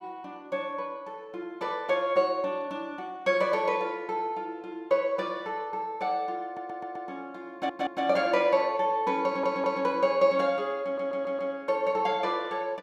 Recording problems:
stutter; 4 times, first at 6.5 s

